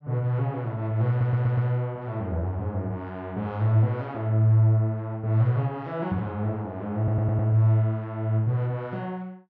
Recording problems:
audio stuttering; at 1 s and at 7 s

